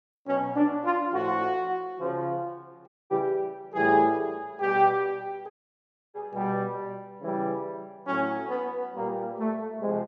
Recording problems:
audio cutting out; at 3 s and at 5.5 s for 0.5 s

